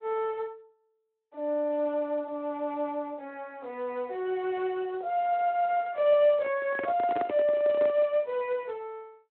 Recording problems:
telephone audio; 320 Hz to 3.5 kHz, Speex
microphone handling noise; from 6.5 to 8 s; peak -3 dB vs average level

